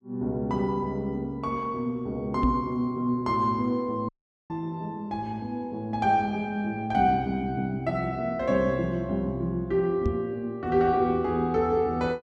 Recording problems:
microphone thump; at 2.5 s and at 10 s; peak +5 dB vs average level
dropout; at 4 s

